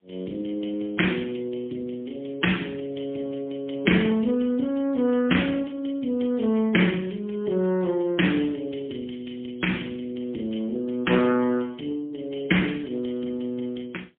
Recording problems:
phone line; 190 Hz to 3.4 kHz, AMR-NB, then MP3

